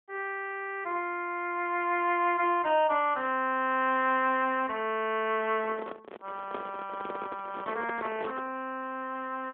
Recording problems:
telephone audio; 280 Hz to 3.3 kHz, AMR-NB
handling noise; from 5.5 to 8.5 s; peak -4 dB vs average level

